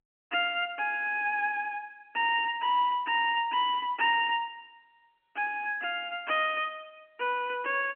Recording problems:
telephone audio; 220 Hz to 3.3 kHz, G.711

